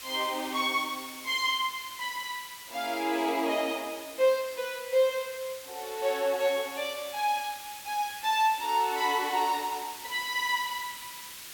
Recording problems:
background hiss; slope +2 dB per octave, SNR 12 dB

